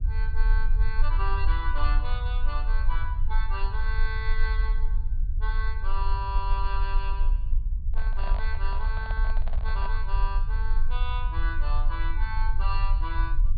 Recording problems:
low-pass filter; nothing above 4.7 kHz
low-frequency rumble; below 42 Hz, strongest tone 18 Hz, SNR -7 dB
handling noise; from 8 to 10 s; peak 0 dB vs average level

